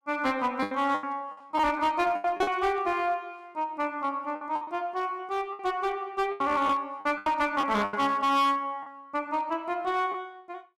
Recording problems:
distortion; hard clipping, uneven, signal-to-distortion ratio 11 dB
packet loss; 9% of the sound replaced, filled with the last packet

